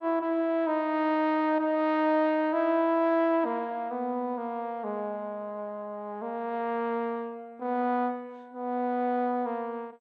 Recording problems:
lossy codec; MP2, log-spectral distance 2 dB

